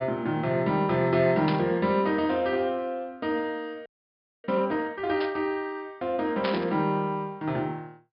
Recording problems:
treble missing; nothing above 5.5 kHz
static burst; at 1.5 s, at 5 s and at 6.5 s; peak -1 dB vs average level
audio freezing; at 4 s for 0.5 s

